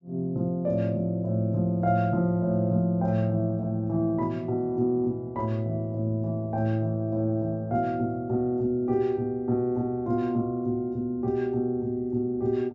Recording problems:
treble cut off; nothing above 7.3 kHz

